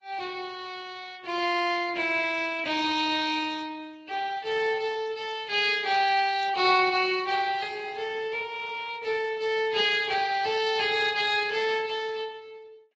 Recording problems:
lossy compression; Speex, then Vorbis, log-spectral distance 4 dB, nothing above 7.3 kHz

